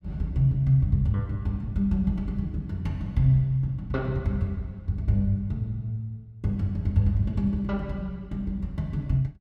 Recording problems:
none

